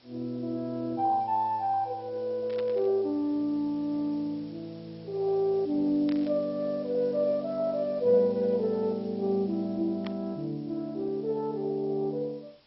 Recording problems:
lossy codec; MP2, log-spectral distance 4 dB
hiss; SNR 28 dB
burst of static; at 2.5 s, at 6 s and at 10 s; peak -9 dB vs average level

